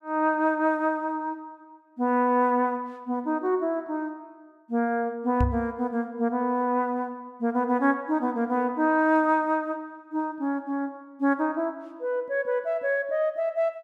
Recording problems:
microphone thump; at 5.5 s; peak +4 dB vs average level

